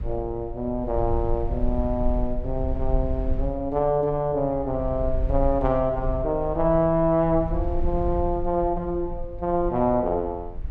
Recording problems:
low-frequency rumble; below 60 Hz, SNR 8 dB

